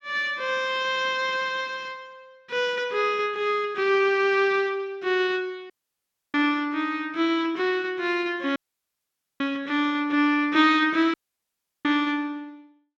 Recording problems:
dropout; at 5.5 s for 0.5 s, at 8.5 s for 1 s and at 11 s for 0.5 s

